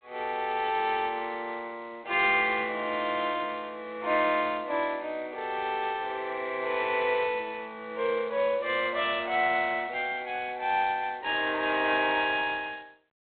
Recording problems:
telephone audio; 260 Hz to 3.7 kHz, G.726

